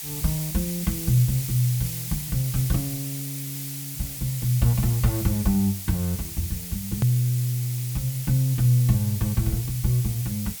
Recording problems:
hiss; slope +3 dB per octave, SNR 8 dB
click at an edit; at 7 s

